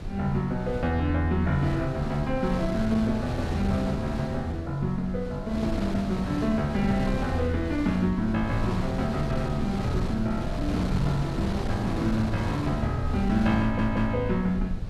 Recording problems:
low-frequency rumble; below 82 Hz, SNR 12 dB
wind noise; below 430 Hz, SNR 7 dB
stutter; at 14 s

